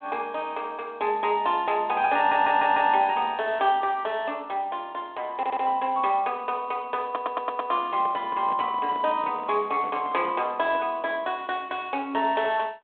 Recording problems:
phone line; 190 Hz to 3.5 kHz, G.726
stutter; at 2 s, at 5.5 s and at 7 s
handling noise; from 8 to 11 s; peak -10 dB vs average level

